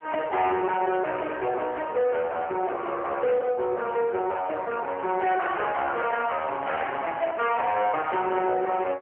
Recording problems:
phone line; 320 Hz to 3.3 kHz, AMR-NB
distortion; soft clipping, signal-to-distortion ratio 9 dB
microphone handling noise; from 6 to 7.5 s; peak -6 dB vs average level

